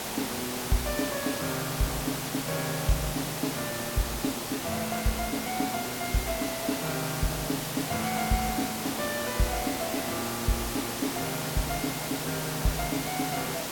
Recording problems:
background hiss; slope -3 dB per octave, SNR 1 dB

